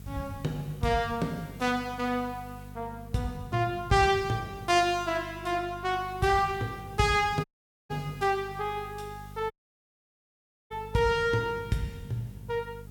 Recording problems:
electrical hum; 50 Hz, harmonics up to 500 Hz, SNR 17 dB
hiss; slope -1 dB per octave, SNR 28 dB
dropout; at 7.5 s and at 9.5 s for 1 s

